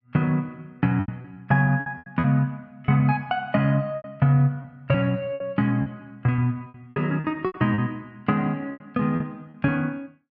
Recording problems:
lost packets; 11% of the sound replaced, filled with repeated pitch periods

